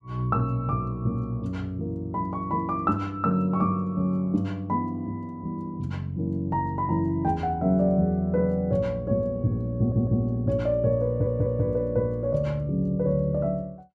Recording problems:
audio stuttering; at 10 s and at 11 s

